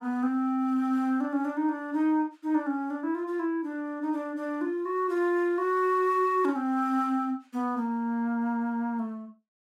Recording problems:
none

